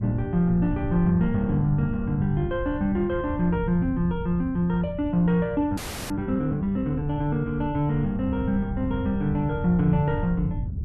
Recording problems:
wind on the microphone; below 130 Hz, SNR 9 dB
audio freezing; at 6 s

